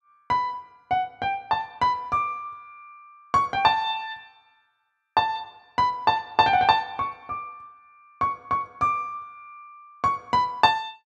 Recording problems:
none

